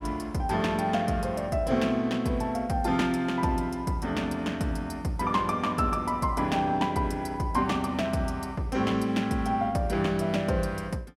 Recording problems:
none

